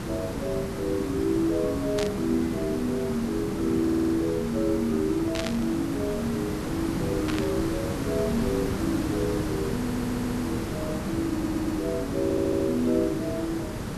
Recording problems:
background hiss; slope -6 dB per octave, SNR 4 dB
burst of static; at 2 s, at 5.5 s and at 7.5 s; peak 0 dB vs average level
stutter; 4 times, first at 4 s

